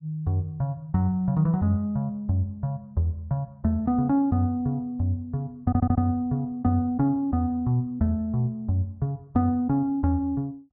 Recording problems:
stutter; at 5.5 s

